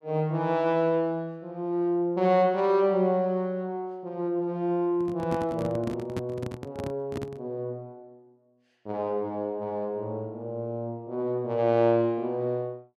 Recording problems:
handling noise; from 5 to 7.5 s; peak -2 dB vs average level

